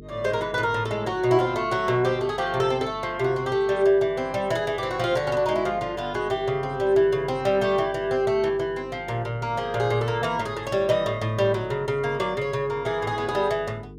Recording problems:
hum; 50 Hz, harmonics up to 450 Hz, SNR 19 dB

